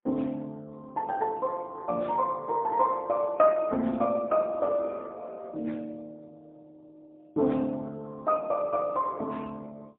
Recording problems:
telephone audio; 190 Hz to 3.5 kHz, AMR-NB, then MP3

